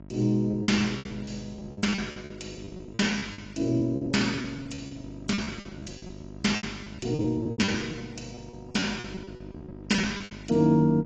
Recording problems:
lossy compression; AAC, log-spectral distance 3 dB, nothing above 7.6 kHz
hum; 50 Hz, harmonics up to 1 kHz, SNR 16 dB
lost packets; 19% of the sound replaced, filled with repeated pitch periods

